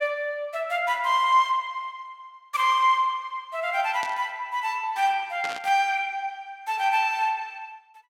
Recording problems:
static burst; at 4 s and at 5.5 s; peak -6 dB vs average level

